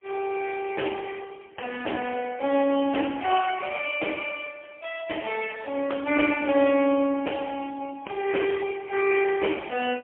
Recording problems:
phone line; 240 Hz to 3.3 kHz, AMR-NB, then MP3

